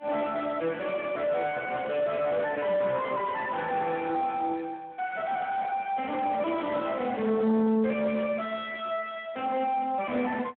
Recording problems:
telephone audio; 170 Hz to 3.5 kHz, Speex
distorted audio; soft clipping, signal-to-distortion ratio 6 dB
handling noise; from 5 to 7.5 s; peak -9 dB vs average level

